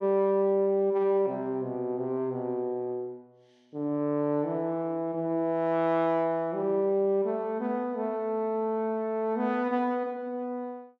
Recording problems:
none

